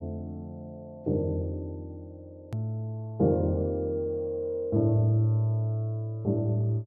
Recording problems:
edit click; at 2.5 s

